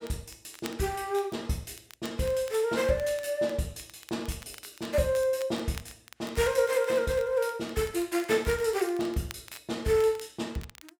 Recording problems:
crackling; vinyl, SNR 21 dB

